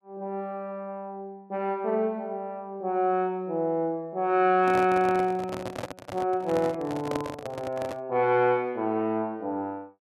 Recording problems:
handling noise; from 4.5 to 8 s; peak -1 dB vs average level

